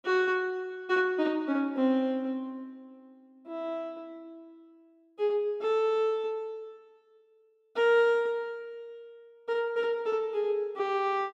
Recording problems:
none

